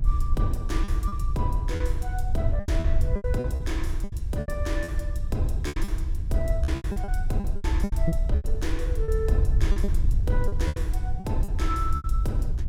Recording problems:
rumble; below 70 Hz, SNR 5 dB
wind noise; below 70 Hz, SNR -5 dB
lost packets; 13% of the sound replaced, filled with repeated pitch periods

